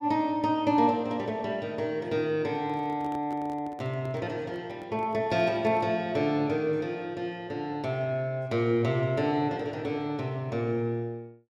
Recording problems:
microphone handling noise; from 2.5 to 6 s; peak -11 dB vs average level

